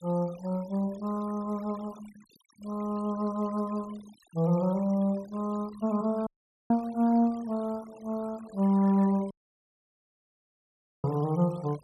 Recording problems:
denoising artefacts; signal-to-artefact ratio 23 dB
audio cutting out; at 6.5 s and at 9.5 s for 1.5 s

